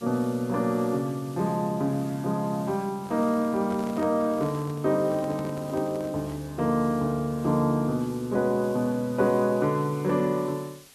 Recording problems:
background hiss; slope 0 dB per octave, SNR 23 dB
microphone handling noise; from 3 to 6.5 s; peak -9 dB vs average level

